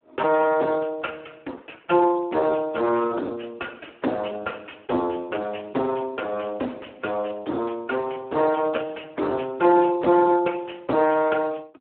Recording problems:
phone line; 240 Hz to 3.2 kHz, Speex
distortion; soft clipping, signal-to-distortion ratio 10 dB

